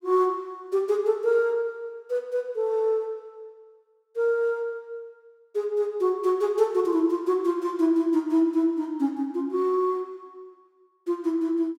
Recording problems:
none

